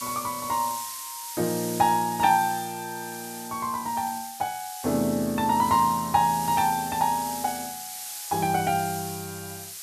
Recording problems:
background hiss; slope +4 dB per octave, SNR 10 dB

